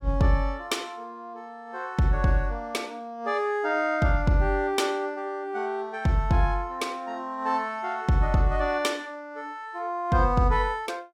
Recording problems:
none

